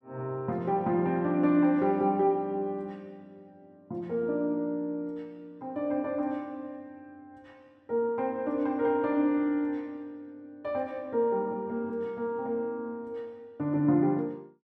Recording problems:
none

